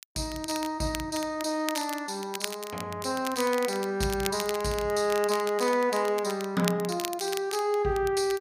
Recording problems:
crackling; vinyl, SNR 10 dB

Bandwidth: 15 kHz